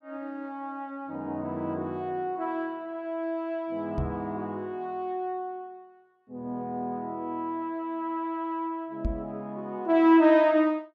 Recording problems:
microphone bump; at 4 s and at 9 s; peak +2 dB vs average level

